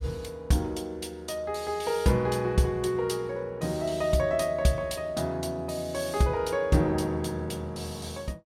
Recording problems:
none

